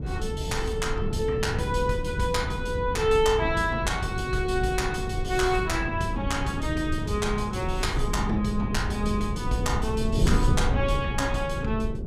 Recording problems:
wind on the microphone; below 150 Hz, SNR 3 dB

